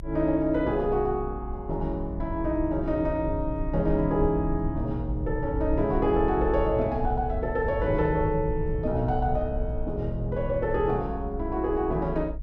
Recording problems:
low-frequency rumble; below 74 Hz, SNR 7 dB

